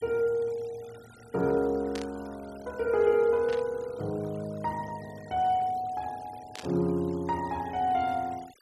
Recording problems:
noise reduction artefacts; signal-to-artefact ratio 23 dB
static burst; at 2 s, at 3.5 s and at 6.5 s; peak -7 dB vs average level

